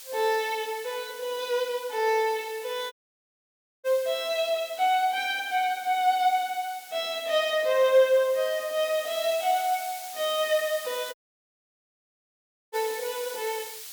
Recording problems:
hiss; slope +4 dB per octave, SNR 15 dB
audio cutting out; at 3 s for 1 s and at 11 s for 1.5 s

